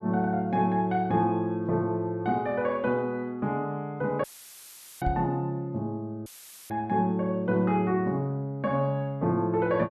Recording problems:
audio cutting out; at 4 s for 1 s and at 6.5 s; filled with static
microphone thump; at 5 s; peak +1 dB vs average level

